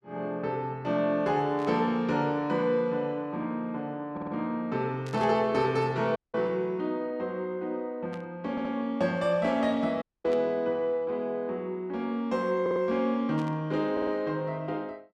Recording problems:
burst of static; 5 times, first at 1.5 s; peak -12 dB vs average level
audio stuttering; 4 times, first at 4 s
audio cutting out; at 6 s and at 10 s

